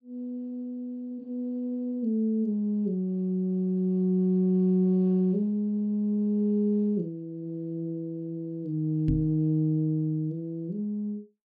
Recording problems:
microphone thump; at 9 s; peak +2 dB vs average level

